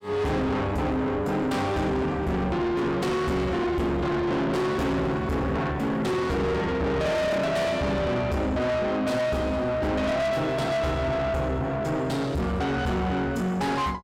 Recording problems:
distortion; soft clipping, signal-to-distortion ratio 7 dB

